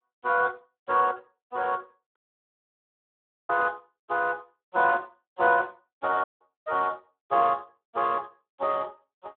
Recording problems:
phone line; 280 Hz to 3.7 kHz, Speex
dropout; at 2 s for 1.5 s and at 6 s

